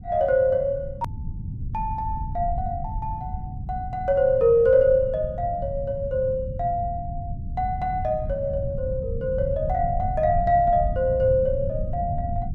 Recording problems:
rumble; below 130 Hz, SNR 9 dB
hard cut with a click; at 1 s

